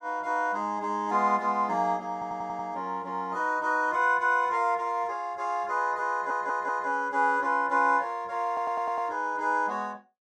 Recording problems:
stutter; at 2 s, at 6 s and at 8.5 s

